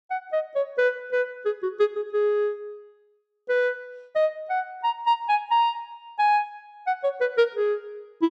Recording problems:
none

